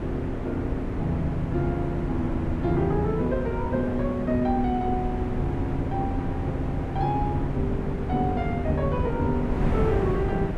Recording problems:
wind on the microphone; below 290 Hz, SNR 2 dB

